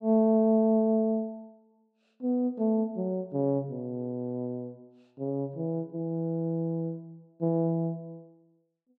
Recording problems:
none

